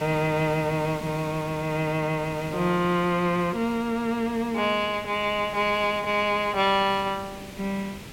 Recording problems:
hiss; SNR 15 dB

